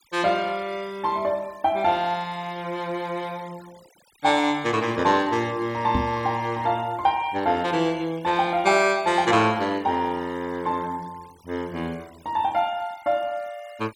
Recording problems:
noise reduction artefacts; signal-to-artefact ratio 25 dB
microphone thump; at 6 s; peak +2 dB vs average level

